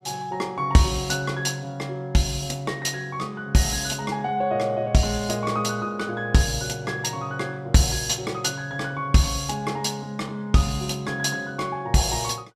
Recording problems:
none

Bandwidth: 14.5 kHz